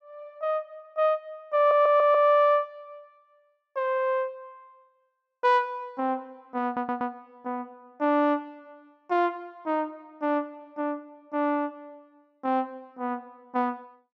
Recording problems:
stutter; at 1.5 s and at 6.5 s

